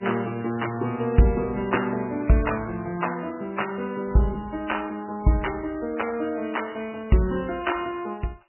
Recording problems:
lossy codec; MP3, log-spectral distance 5 dB, nothing above 2.9 kHz

